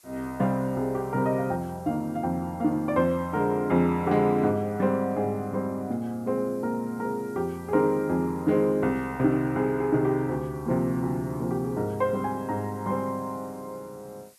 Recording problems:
hiss; slope +2 dB per octave, SNR 28 dB

